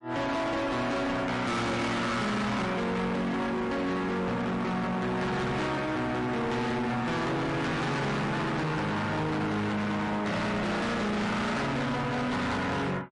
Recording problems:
lossy compression; MP3, log-spectral distance 2 dB, nothing above 10.4 kHz
distortion; hard clipping, uneven, signal-to-distortion ratio 6 dB

